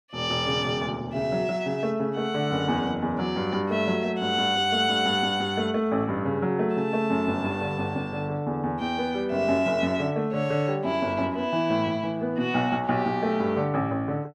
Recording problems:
none

